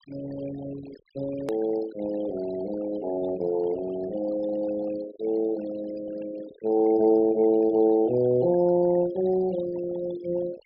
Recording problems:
low-pass filter; nothing above 5.5 kHz
noise reduction artefacts; signal-to-artefact ratio 17 dB
edit click; at 1.5 s

